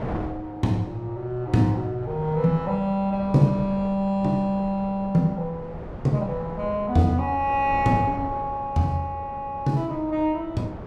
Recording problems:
wind noise; below 590 Hz, SNR 14 dB

